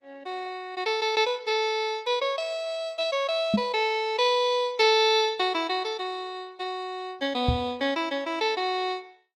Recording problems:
codec artefacts; Opus, log-spectral distance 2 dB, nothing above 17.7 kHz
microphone thump; at 3.5 s and at 7.5 s; peak +6 dB vs average level

